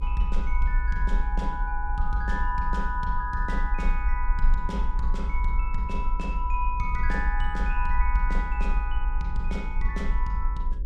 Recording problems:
hum; 60 Hz, harmonics up to 540 Hz, SNR 14 dB
low-frequency rumble; below 50 Hz, SNR -3 dB

